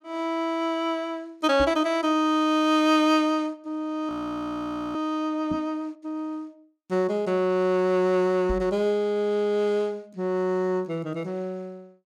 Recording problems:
microphone bump; at 1.5 s, at 5.5 s and at 8.5 s; peak -2 dB vs average level
frozen audio; at 4 s for 1 s

